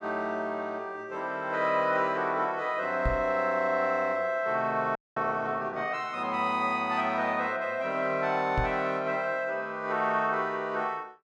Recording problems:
microphone thump; at 3 s and at 8.5 s; peak +2 dB vs average level
frozen audio; at 5 s

